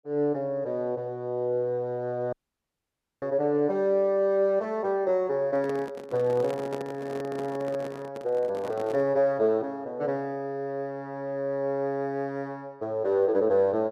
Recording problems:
dropout; at 2.5 s for 1 s
microphone handling noise; from 5.5 to 9 s; peak -4 dB vs average level

